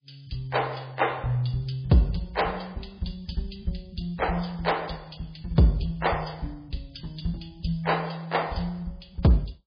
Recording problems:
lossy codec; MP3, log-spectral distance 5 dB, nothing above 11 kHz

